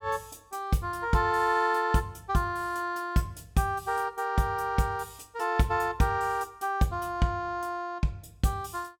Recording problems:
none

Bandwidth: 17.5 kHz